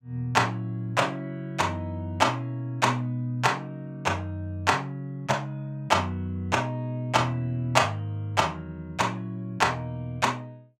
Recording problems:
none

